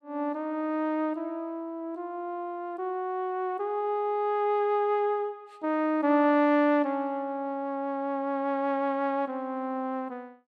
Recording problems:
none

